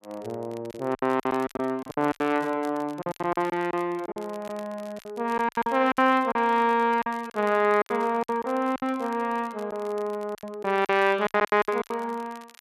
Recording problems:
crackle; vinyl, SNR 25 dB
lost packets; 14% of the sound replaced, filled with silence

